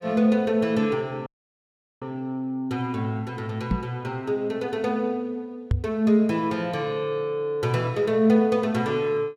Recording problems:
audio cutting out; at 1.5 s for 0.5 s
microphone bump; at 3.5 s and at 5.5 s; peak +5 dB vs average level

